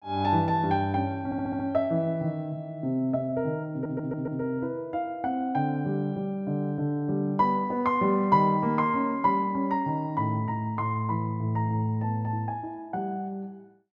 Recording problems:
stutter; at 1.5 s and at 3.5 s

